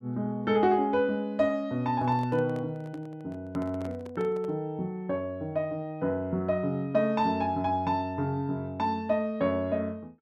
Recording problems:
microphone handling noise; from 2 to 4.5 s; peak -12 dB vs average level

